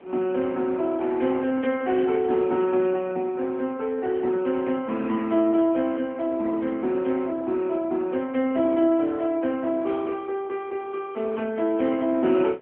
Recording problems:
phone line; 190 Hz to 3.4 kHz, AMR-NB
wind on the microphone; below 900 Hz, SNR 26 dB

